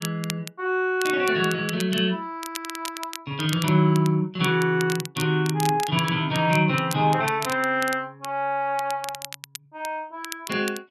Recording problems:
crackling; vinyl, SNR 13 dB

